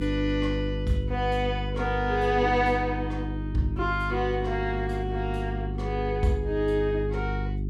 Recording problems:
hum; 50 Hz, harmonics up to 400 Hz, SNR 4 dB

